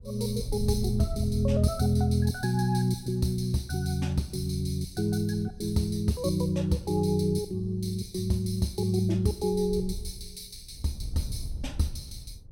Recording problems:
wind on the microphone; below 88 Hz, SNR 14 dB

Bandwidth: 16.5 kHz